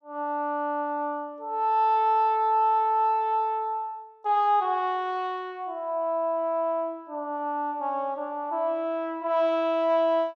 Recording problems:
none

